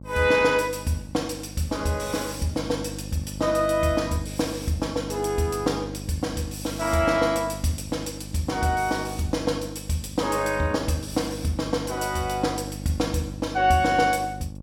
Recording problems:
mains hum; 50 Hz, harmonics up to 600 Hz, SNR 12 dB

